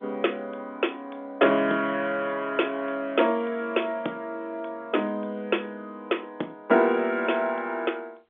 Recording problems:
telephone audio; 240 Hz to 3.6 kHz, G.711

